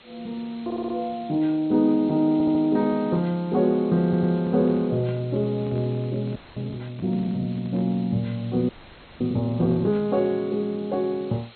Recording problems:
lossy compression; MP2, log-spectral distance 9 dB, nothing above 4.2 kHz
hiss; SNR 25 dB
stutter; at 0.5 s, at 2.5 s and at 4 s
handling noise; from 4 to 8 s; peak -9 dB vs average level
audio freezing; at 6.5 s and at 8.5 s for 0.5 s

